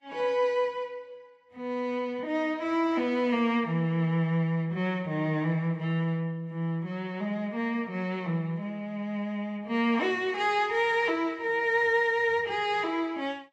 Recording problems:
lossy codec; Vorbis, log-spectral distance 2 dB

